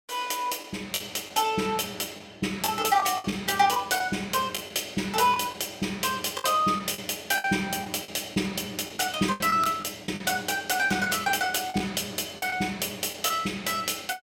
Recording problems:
packet loss; 8% of the sound replaced, filled with the last packet

